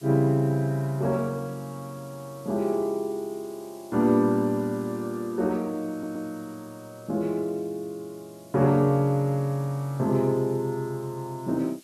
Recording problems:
background hiss; slope +3 dB per octave, SNR 26 dB
stutter; at 6 s

